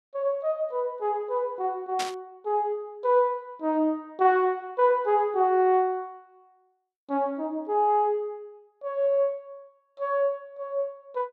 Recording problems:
static burst; at 2 s; peak -2 dB vs average level

